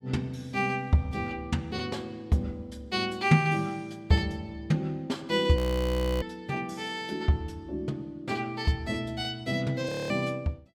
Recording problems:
frozen audio; at 5.5 s for 0.5 s and at 10 s

